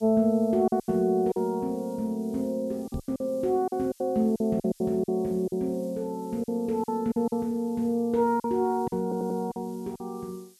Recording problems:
hiss; slope +6 dB per octave, SNR 27 dB
lost packets; 10% of the sound replaced, filled with silence
microphone bump; at 3 s; peak -4 dB vs average level
audio stuttering; at 9 s

